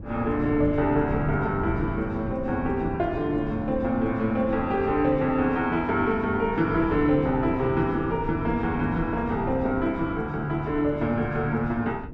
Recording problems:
wind noise; below 230 Hz, SNR 10 dB

